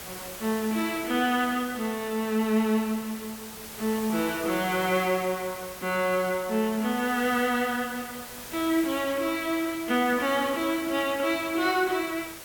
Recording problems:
background hiss; slope -2 dB per octave, SNR 12 dB

